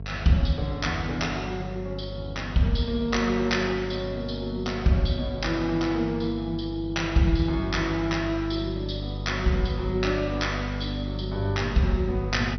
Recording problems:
lossy compression; MP2, log-spectral distance 3 dB, nothing above 6 kHz
hum; 50 Hz, harmonics up to 650 Hz, SNR 8 dB

